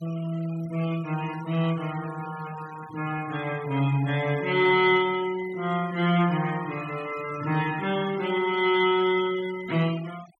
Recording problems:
denoising artefacts; signal-to-artefact ratio 17 dB

